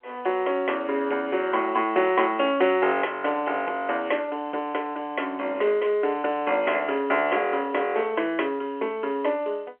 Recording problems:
telephone audio; 300 Hz to 3.1 kHz, G.711

